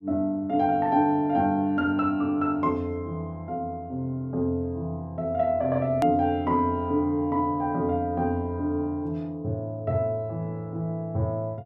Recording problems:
edit click; at 6 s

